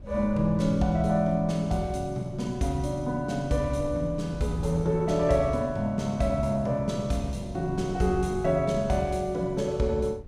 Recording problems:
wind noise; below 150 Hz, SNR 15 dB

